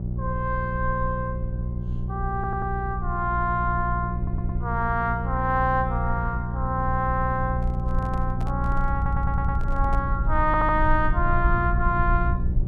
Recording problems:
electrical hum; 60 Hz, harmonics up to 540 Hz, SNR 3 dB
low-frequency rumble; below 62 Hz, SNR 5 dB
stutter; 4 times, first at 2.5 s
microphone handling noise; from 7.5 to 10 s; peak -10 dB vs average level

